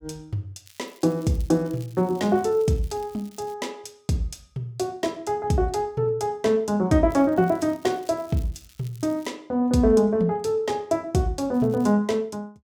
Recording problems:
crackling; from 0.5 to 3.5 s, from 7 to 9.5 s and at 12 s; loose cable, SNR 27 dB

